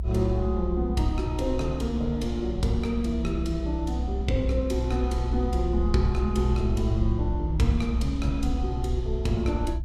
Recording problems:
rumble; below 64 Hz, strongest tone 62 Hz, SNR 2 dB

